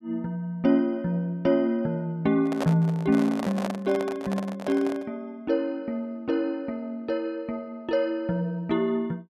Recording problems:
microphone handling noise; from 2.5 to 5 s; peak 0 dB vs average level

